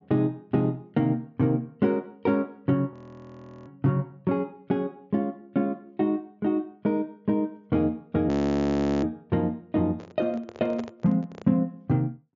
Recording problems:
treble cut off; nothing above 7.1 kHz
frozen audio; at 3 s for 0.5 s and at 8.5 s for 0.5 s
microphone handling noise; from 10 to 11 s; peak -6 dB vs average level

